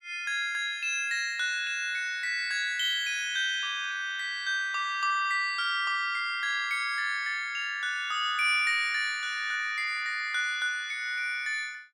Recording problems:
none

